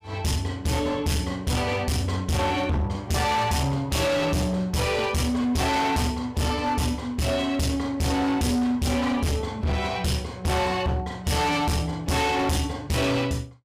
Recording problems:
distorted audio; hard clipping, signal-to-distortion ratio 8 dB

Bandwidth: 15.5 kHz